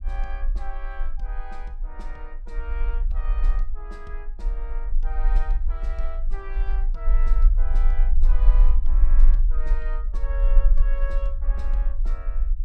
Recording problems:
rumble; below 38 Hz, strongest tone 24 Hz, SNR -16 dB

